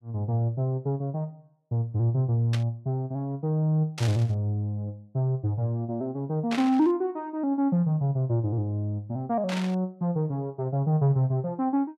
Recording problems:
burst of static; 4 times, first at 2.5 s; peak -3 dB vs average level

